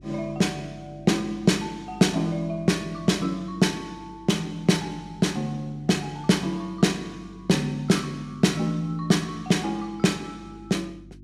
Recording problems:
hum; 50 Hz, harmonics up to 350 Hz, SNR 24 dB

